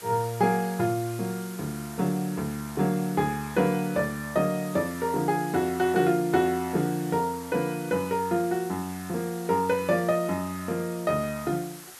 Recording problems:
background hiss; SNR 16 dB

